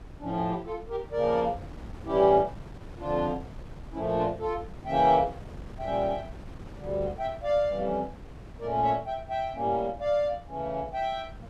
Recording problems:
wind on the microphone; below 280 Hz, SNR 17 dB

